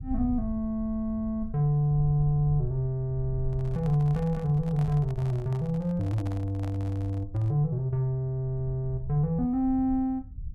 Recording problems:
low-frequency rumble; below 80 Hz, SNR 13 dB
handling noise; from 3.5 to 7.5 s; peak -11 dB vs average level

